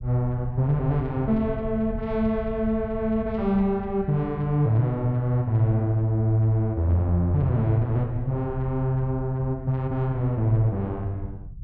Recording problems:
low-frequency rumble; below 110 Hz, SNR 14 dB

